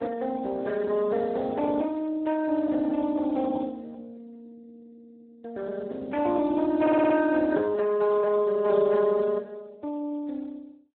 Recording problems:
phone line; 260 Hz to 2.2 kHz, Speex
audio stuttering; at 7 s

